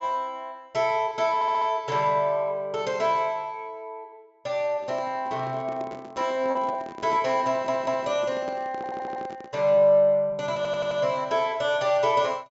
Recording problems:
treble missing; nothing above 8 kHz
lost packets; 0.9% of the sound replaced, filled with repeated pitch periods
stutter; 4 times, first at 1.5 s
microphone handling noise; from 5 to 9.5 s; peak -8 dB vs average level

